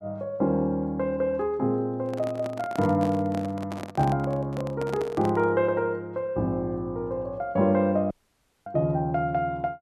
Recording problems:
microphone handling noise; from 2 to 5.5 s; peak -5 dB vs average level
dropout; at 8 s for 0.5 s

